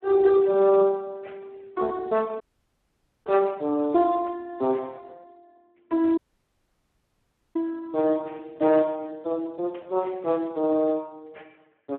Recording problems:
phone line; 240 Hz to 2.8 kHz, Speex
dropout; at 2.5 s for 1 s and at 6 s for 1.5 s
static burst; at 4.5 s, at 8.5 s and at 9.5 s; peak -20 dB vs average level

